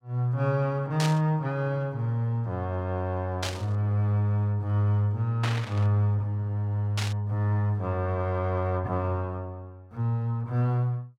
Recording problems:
burst of static; 4 times, first at 1 s; peak 0 dB vs average level

